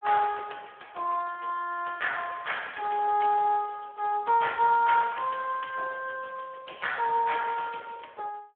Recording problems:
phone line; 300 Hz to 3.3 kHz, Speex

